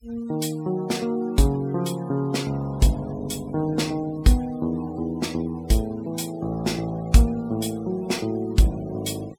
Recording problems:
noise reduction artefacts; signal-to-artefact ratio 22 dB

